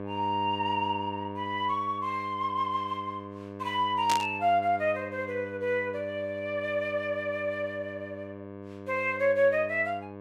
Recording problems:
hum; 50 Hz, harmonics up to 2.2 kHz, SNR 12 dB
static burst; at 4 s; peak +1 dB vs average level

